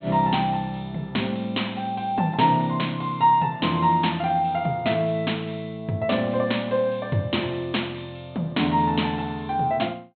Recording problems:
treble missing; nothing above 4.2 kHz

